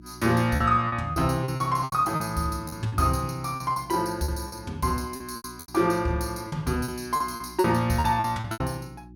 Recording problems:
hum; 60 Hz, harmonics up to 360 Hz, SNR 21 dB
lost packets; 13% of the sound replaced, filled with repeated pitch periods

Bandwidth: 17.5 kHz